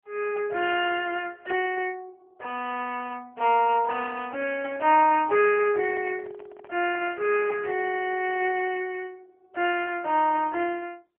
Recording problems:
telephone audio; 280 Hz to 3.1 kHz, AMR-NB
microphone handling noise; from 4.5 to 7.5 s; peak -9 dB vs average level

